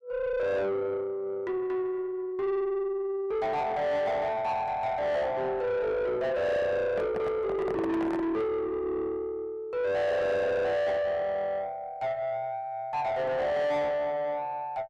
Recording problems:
distorted audio; soft clipping, signal-to-distortion ratio 5 dB
handling noise; from 7 to 8.5 s; peak -1 dB vs average level

